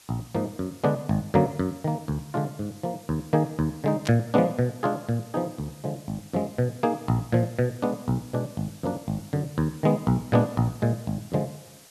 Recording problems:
hiss; slope +1 dB per octave, SNR 23 dB
static burst; at 4 s; peak -2 dB vs average level

